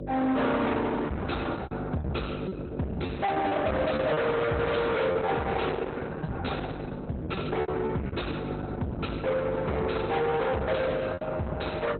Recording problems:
codec artefacts; Opus, log-spectral distance 4 dB, nothing above 4.1 kHz
distorted audio; soft clipping, signal-to-distortion ratio 6 dB
hum; 50 Hz, harmonics up to 1 kHz, SNR 8 dB
lost packets; 10% of the sound replaced, filled with repeated pitch periods

